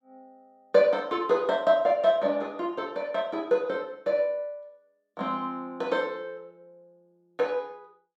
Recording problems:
none

